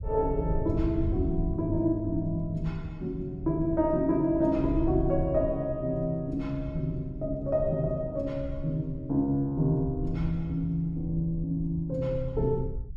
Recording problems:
rumble; below 88 Hz, SNR 9 dB

